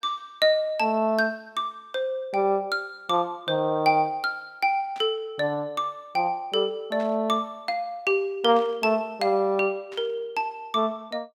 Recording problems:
burst of static; 4 times, first at 5 s; peak -14 dB vs average level

